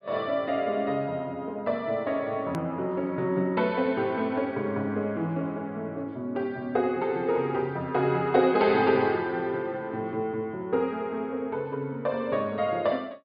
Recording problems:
treble missing; nothing above 4.9 kHz
edit click; at 2.5 s

